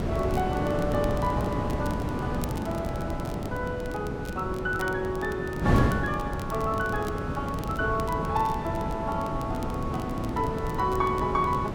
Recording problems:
wind on the microphone; below 390 Hz, SNR 1 dB
crackling; vinyl, SNR 19 dB

